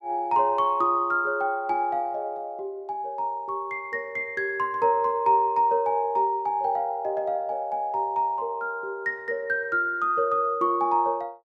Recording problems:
none

